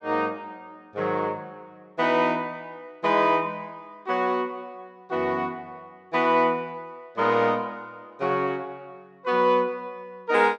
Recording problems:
none

